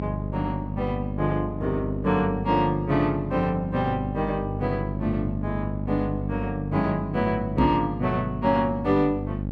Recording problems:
electrical hum; 50 Hz, harmonics up to 600 Hz, SNR 5 dB
microphone thump; at 7.5 s; peak +6 dB vs average level

